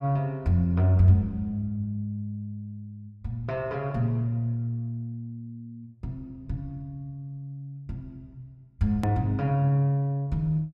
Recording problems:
edit click; at 9 s

